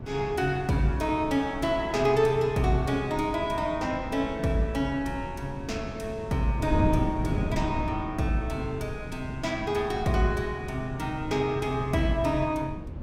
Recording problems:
wind noise; below 230 Hz, SNR 8 dB

